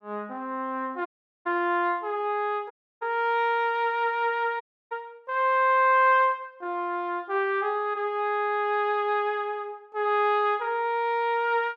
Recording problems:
audio cutting out; at 1 s, at 2.5 s and at 4.5 s

